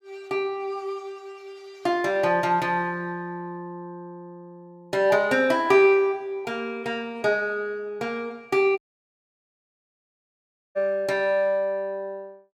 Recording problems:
dropout; at 9 s for 2 s

